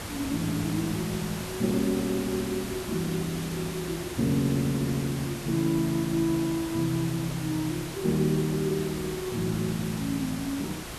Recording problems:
hum; 60 Hz, harmonics up to 720 Hz, SNR 25 dB
hiss; slope -3 dB per octave, SNR 8 dB

